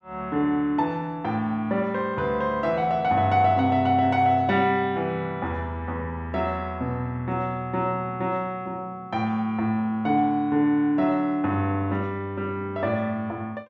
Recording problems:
none

